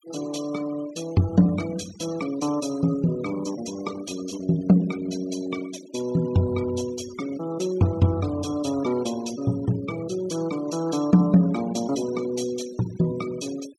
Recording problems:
noise reduction artefacts; signal-to-artefact ratio 18 dB

